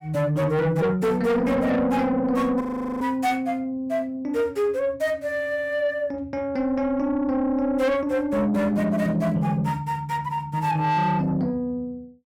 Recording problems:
distortion; soft clipping, signal-to-distortion ratio 10 dB
audio freezing; at 2.5 s

